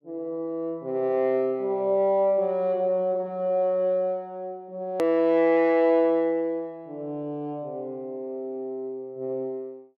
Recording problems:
hard cut with a click; at 5 s

